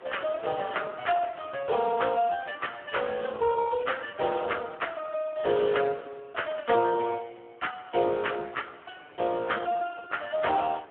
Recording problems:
telephone audio; 240 Hz to 3.3 kHz, Speex
wind noise; below 1.4 kHz, SNR 24 dB

